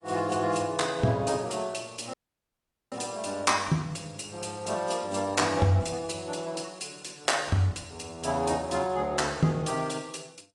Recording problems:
lossy compression; AAC, log-spectral distance 5 dB, nothing above 10.1 kHz
dropout; at 2 s for 1 s

